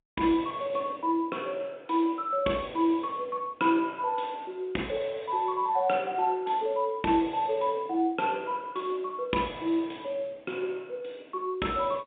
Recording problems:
telephone audio; 150 Hz to 3.7 kHz, G.711

